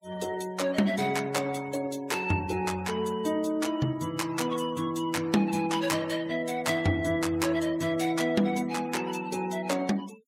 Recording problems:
noise reduction artefacts; signal-to-artefact ratio 21 dB

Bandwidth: 16.5 kHz